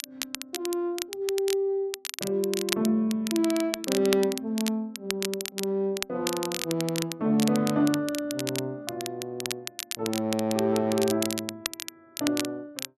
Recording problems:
crackling; vinyl, SNR 7 dB

